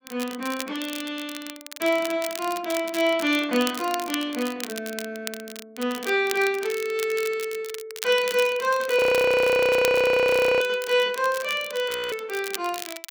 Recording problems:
crackle; vinyl, SNR 13 dB
audio freezing; at 9 s for 1.5 s and at 12 s

